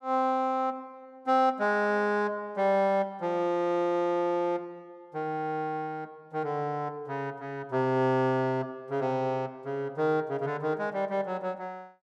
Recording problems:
none

